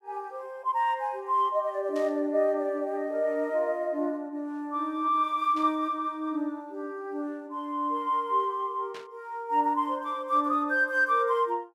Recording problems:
burst of static; at 2 s, at 5.5 s and at 9 s; peak -13 dB vs average level

